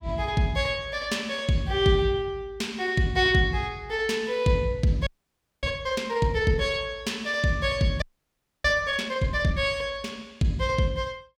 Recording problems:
frozen audio; at 5 s for 0.5 s and at 8 s for 0.5 s

